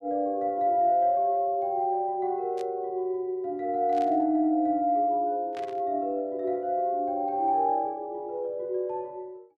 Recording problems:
static burst; at 2.5 s, at 4 s and at 5.5 s; peak -14 dB vs average level

